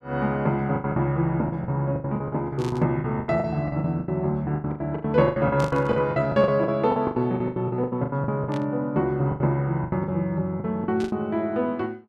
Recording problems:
lost packets; 19% of the sound replaced, filled with the last packet
burst of static; 4 times, first at 2.5 s; peak -10 dB vs average level

